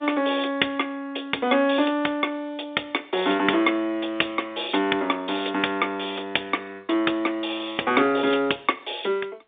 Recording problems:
phone line; 240 Hz to 3.6 kHz, G.711

